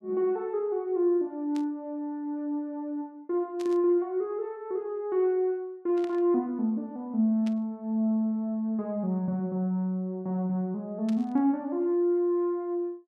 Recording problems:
static burst; 5 times, first at 1.5 s; peak -13 dB vs average level

